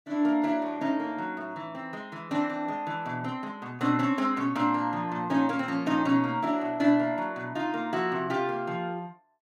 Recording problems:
none

